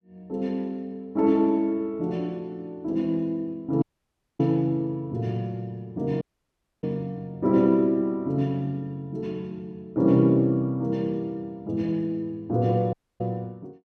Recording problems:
dropout; at 4 s for 0.5 s, at 6 s for 0.5 s and at 13 s

